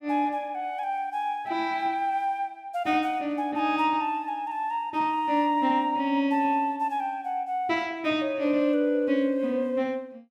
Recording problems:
none

